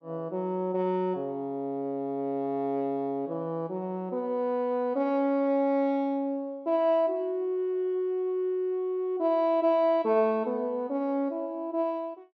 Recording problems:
none

